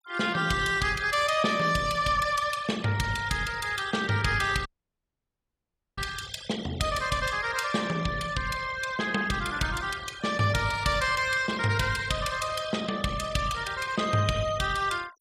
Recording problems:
noise reduction artefacts; signal-to-artefact ratio 16 dB
audio cutting out; at 4.5 s for 1.5 s

